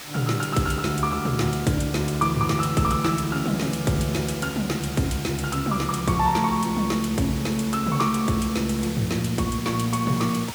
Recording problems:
hiss; slope 0 dB per octave, SNR 12 dB

